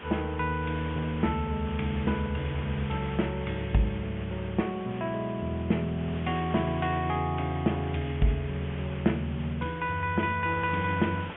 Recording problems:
treble cut off; nothing above 3.3 kHz
hiss; SNR 14 dB

